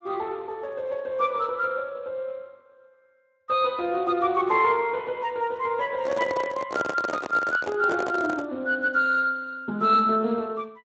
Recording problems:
codec artefacts; Speex, log-spectral distance 3 dB
handling noise; from 6 to 8.5 s; peak 0 dB vs average level

